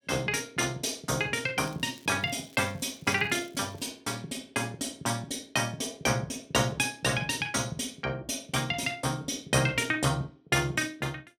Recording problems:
crackling; from 1.5 to 4 s; loose cable, SNR 27 dB

